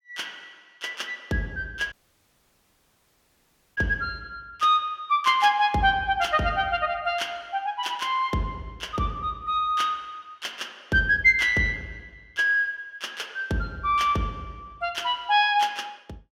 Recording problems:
dropout; at 2 s for 2 s

